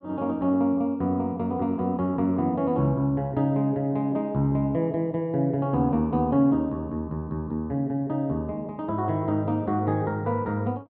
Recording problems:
none

